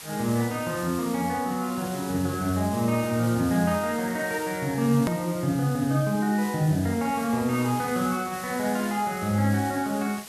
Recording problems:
background hiss; slope +1 dB per octave, SNR 14 dB
hard cut with a click; at 5 s

